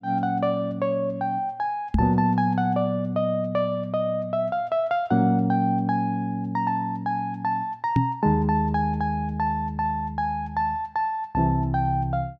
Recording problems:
knock on the microphone; at 2 s and at 8 s; peak +6 dB vs average level

